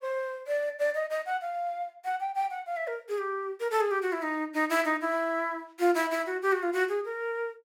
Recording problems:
none

